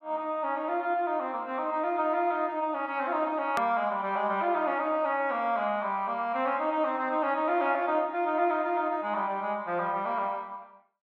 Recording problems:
click at an edit; at 3.5 s

